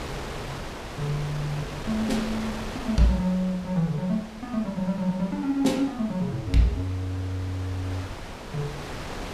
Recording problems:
wind noise; below 1.8 kHz, SNR 10 dB

